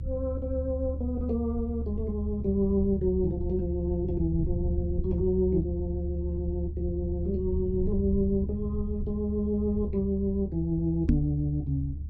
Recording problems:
low-frequency rumble; below 76 Hz, strongest tone 74 Hz, SNR 4 dB
microphone thump; at 11 s; peak +8 dB vs average level

